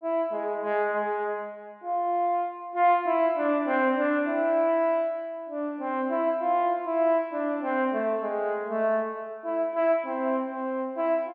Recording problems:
none

